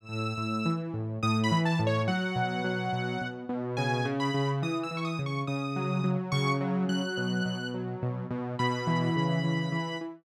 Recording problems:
none

